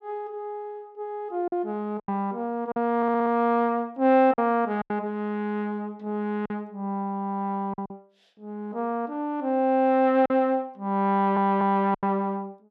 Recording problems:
lost packets; 5% of the sound replaced, filled with silence
audio stuttering; at 3 s and at 11 s

